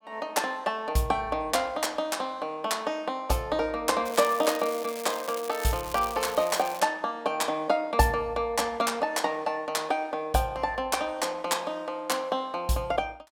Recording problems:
crackle; from 4 to 7 s; loose cable, SNR 13 dB

